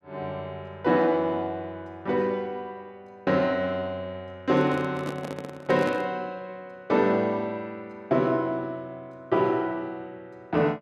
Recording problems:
handling noise; from 4.5 to 6 s; peak -3 dB vs average level

